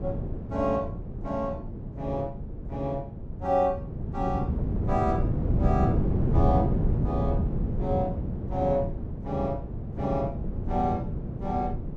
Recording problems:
wind on the microphone; below 200 Hz, SNR 0 dB

